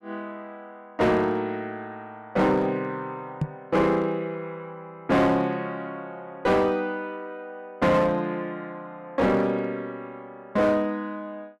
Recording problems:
distorted audio; hard clipping, uneven, signal-to-distortion ratio 10 dB
microphone thump; at 3.5 s; peak +3 dB vs average level

